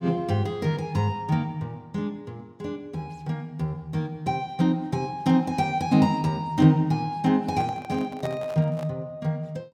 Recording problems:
microphone handling noise; from 7.5 to 9 s; peak -6 dB vs average level

